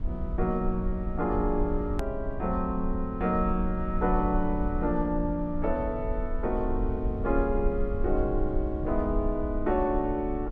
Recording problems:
low-frequency rumble; below 62 Hz, SNR 5 dB
edit click; at 2 s

